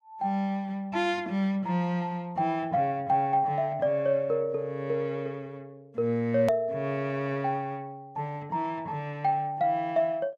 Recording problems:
edit click; at 6.5 s

